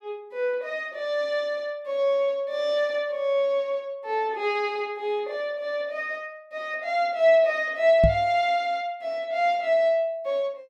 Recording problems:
microphone bump; at 8 s; peak +5 dB vs average level

